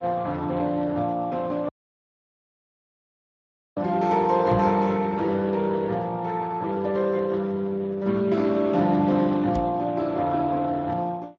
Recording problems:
lossy codec; Speex, log-spectral distance 3 dB
audio cutting out; at 1.5 s for 2 s
microphone thump; at 4.5 s and at 9.5 s; peak -3 dB vs average level

